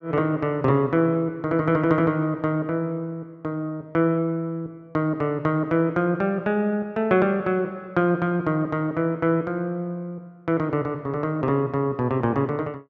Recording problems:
none

